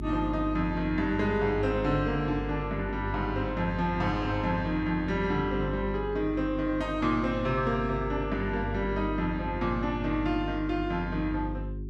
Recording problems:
hum; 50 Hz, harmonics up to 400 Hz, SNR 8 dB

